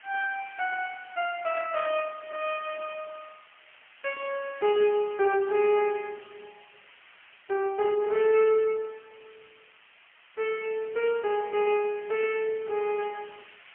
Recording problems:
telephone audio; 320 Hz to 3.1 kHz, AMR-NB, then MP3
background hiss; SNR 24 dB

